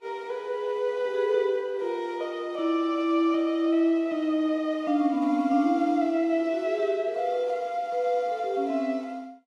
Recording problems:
codec artefacts; Vorbis, log-spectral distance 2 dB, nothing above 12.3 kHz

